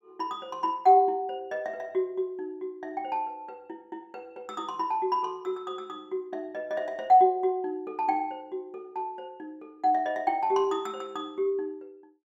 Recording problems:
none

